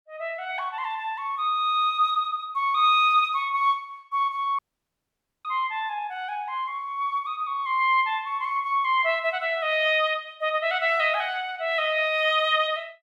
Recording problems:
audio cutting out; at 4.5 s for 1 s

